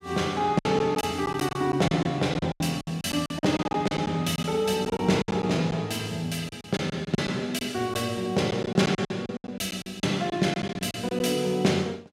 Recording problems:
packet loss; 13% of the sound replaced, filled with silence

